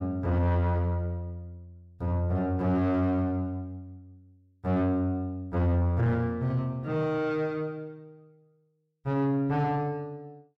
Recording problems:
distorted audio; soft clipping, signal-to-distortion ratio 11 dB

